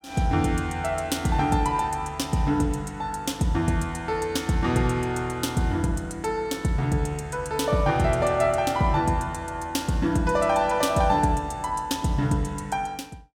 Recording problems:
none

